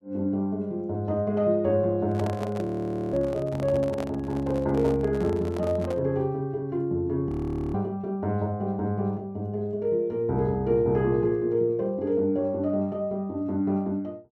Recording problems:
microphone handling noise; from 2 to 6 s; peak -5 dB vs average level
frozen audio; at 2.5 s and at 7.5 s

